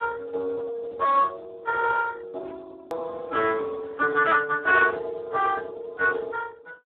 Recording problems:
telephone audio; 320 Hz to 3.7 kHz, Speex
hard cut with a click; at 3 s

